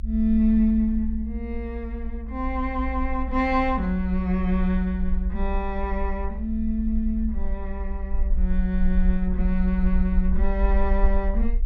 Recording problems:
low-frequency rumble; below 58 Hz, SNR 3 dB

